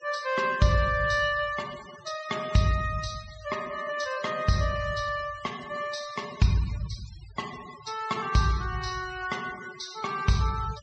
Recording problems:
treble missing; nothing above 8 kHz
noise reduction artefacts; signal-to-artefact ratio 17 dB

